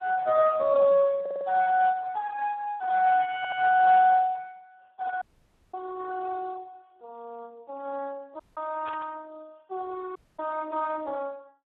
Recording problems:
phone line; 320 Hz to 3.7 kHz, Speex
audio stuttering; at 1 s and at 3.5 s
audio cutting out; at 5 s for 0.5 s, at 8.5 s and at 10 s
static burst; at 9 s; peak -14 dB vs average level

